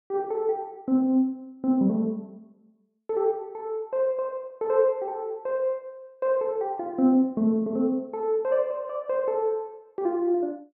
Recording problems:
none

